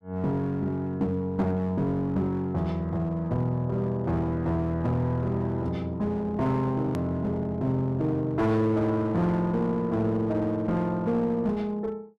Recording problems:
distortion; hard clipping, uneven, signal-to-distortion ratio 10 dB
hard cut with a click; at 7 s

